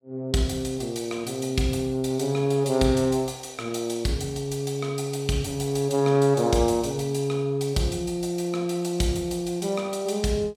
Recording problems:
none

